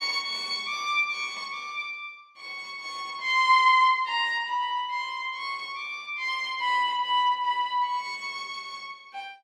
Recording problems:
none

